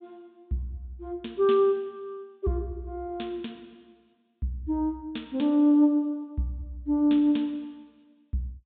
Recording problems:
treble cut off; nothing above 4 kHz

